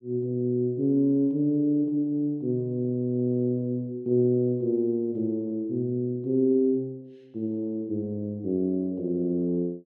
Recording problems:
none

